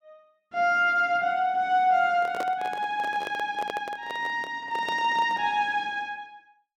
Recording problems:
handling noise; from 2 to 5.5 s; peak -4 dB vs average level

